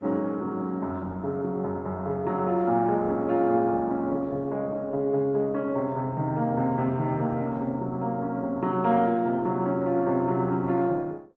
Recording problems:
lossy codec; Opus, then AAC, log-spectral distance 2 dB

